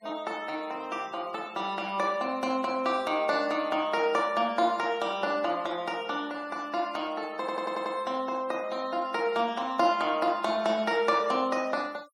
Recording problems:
noise reduction artefacts; signal-to-artefact ratio 24 dB
audio stuttering; at 7.5 s

